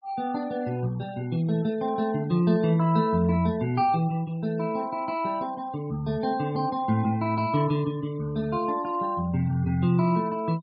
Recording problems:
treble cut off; nothing above 5.5 kHz
noise reduction artefacts; signal-to-artefact ratio 24 dB

